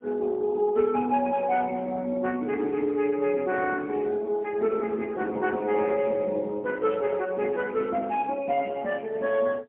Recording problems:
telephone audio; 240 Hz to 3.3 kHz, AMR-NB, then MP3

